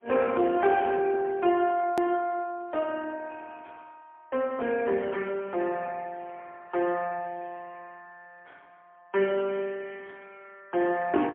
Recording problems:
phone line; 220 Hz to 3.2 kHz, AMR-NB, then MP3
edit click; at 2 s

